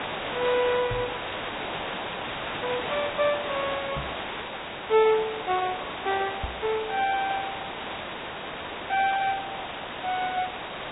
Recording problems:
treble missing; nothing above 3.1 kHz
codec artefacts; Vorbis, log-spectral distance 20 dB
hiss; SNR 5 dB
microphone thump; at 1 s, at 4 s and at 6.5 s; peak -2 dB vs average level

